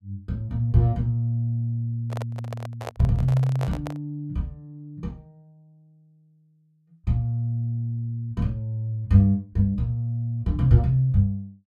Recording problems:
handling noise; from 2 to 4 s; peak -4 dB vs average level

